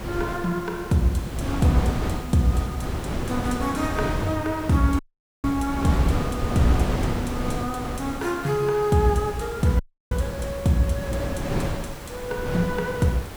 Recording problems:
hiss; SNR 16 dB
wind noise; below 450 Hz, SNR 6 dB
dropout; at 5 s and at 10 s

